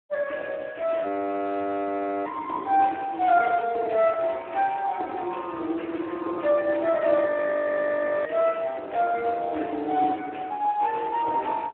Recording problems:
telephone audio; 260 Hz to 2.9 kHz, Speex
audio freezing; at 1 s for 1 s and at 7.5 s for 1 s

